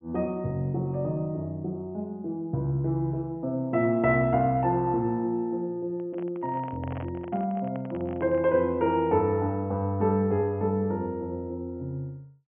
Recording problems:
treble missing; nothing above 3.2 kHz
microphone handling noise; from 6 to 8.5 s; peak -9 dB vs average level

